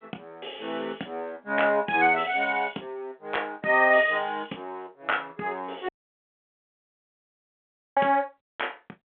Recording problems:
phone line; 220 Hz to 3.4 kHz, G.726
audio cutting out; at 6 s for 2 s

